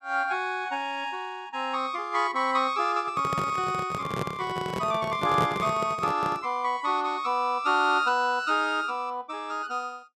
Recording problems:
microphone handling noise; from 3 to 6.5 s; peak +1 dB vs average level

